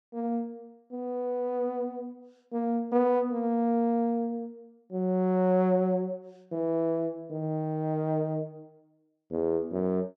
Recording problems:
none

